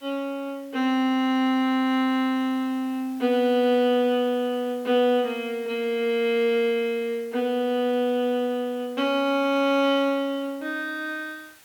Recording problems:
background hiss; slope 0 dB per octave, SNR 27 dB

